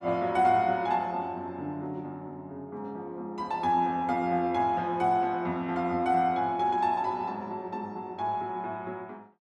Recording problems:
none

